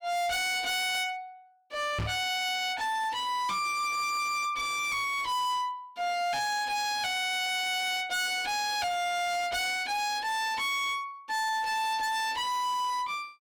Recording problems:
distortion; hard clipping, uneven, signal-to-distortion ratio 6 dB
microphone thump; at 2 s; peak 0 dB vs average level

